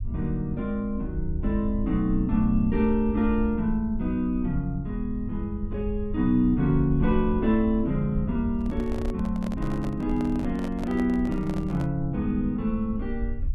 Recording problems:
low-frequency rumble; below 70 Hz, SNR 9 dB
microphone handling noise; from 8.5 to 12 s; peak -7 dB vs average level

